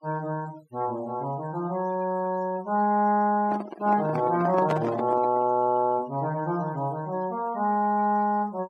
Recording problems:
noise reduction artefacts; signal-to-artefact ratio 22 dB
microphone handling noise; from 3.5 to 5.5 s; peak +1 dB vs average level

